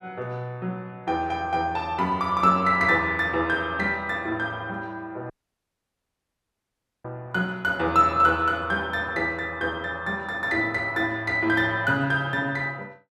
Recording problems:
audio cutting out; at 5.5 s for 1.5 s

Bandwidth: 13 kHz